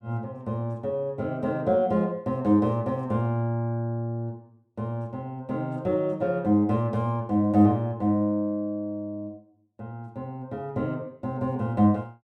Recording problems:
none

